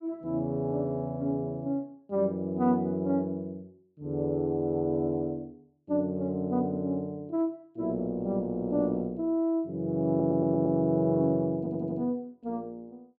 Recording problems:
stutter; at 10 s and at 12 s

